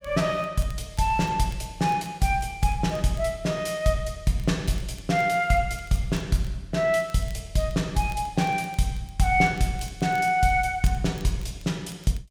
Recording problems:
crackle; vinyl, SNR 27 dB

